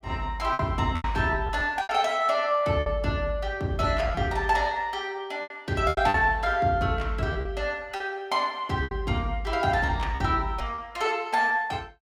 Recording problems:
packet loss; 7% of the sound replaced, filled with repeated pitch periods

